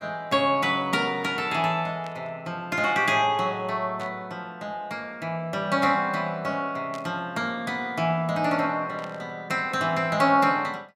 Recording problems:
static burst; 4 times, first at 2 s; peak -13 dB vs average level

